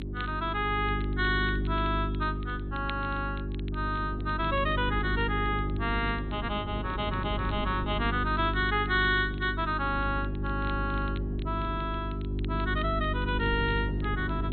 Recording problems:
treble missing; nothing above 4.2 kHz
electrical hum; 50 Hz, harmonics up to 400 Hz, SNR 3 dB
wind noise; below 270 Hz, SNR 13 dB
crackle; vinyl, SNR 22 dB

